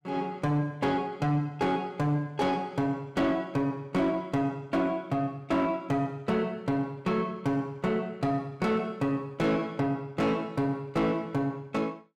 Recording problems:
distortion; soft clipping, signal-to-distortion ratio 10 dB

